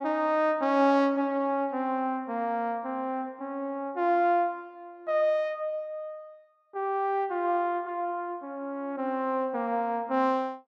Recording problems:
none

